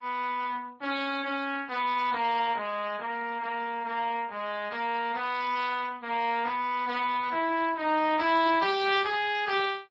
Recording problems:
lossy compression; MP3, then Speex, log-spectral distance 4 dB

